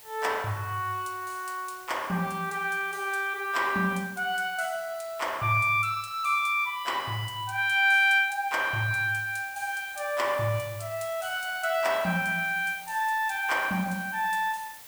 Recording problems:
background hiss; SNR 19 dB

